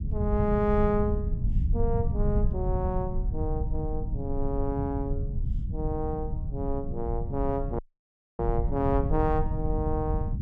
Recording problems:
low-frequency rumble; below 110 Hz, SNR 0 dB
dropout; at 8 s for 0.5 s

